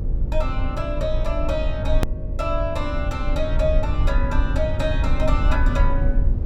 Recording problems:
electrical hum; 50 Hz, harmonics up to 600 Hz, SNR 7 dB
rumble; below 66 Hz, SNR -2 dB
edit click; at 2 s

